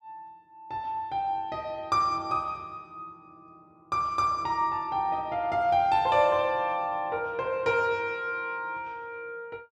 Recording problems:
none

